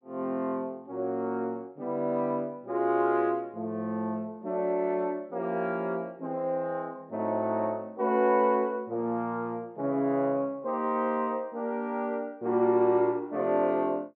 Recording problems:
none

